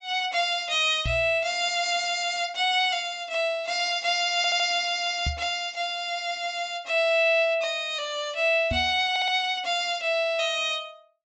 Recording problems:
low-pass filter; nothing above 8 kHz
microphone thump; at 1 s, at 5.5 s and at 8.5 s; peak -2 dB vs average level
audio stuttering; at 4.5 s and at 9 s

